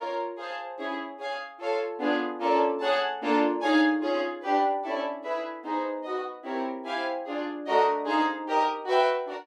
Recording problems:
none

